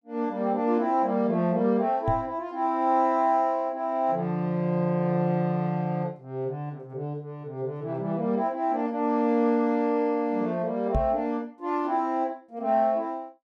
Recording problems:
microphone thump; at 2 s and at 11 s; peak +2 dB vs average level

